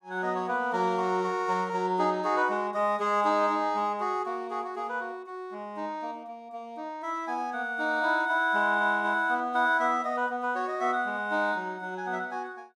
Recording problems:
none

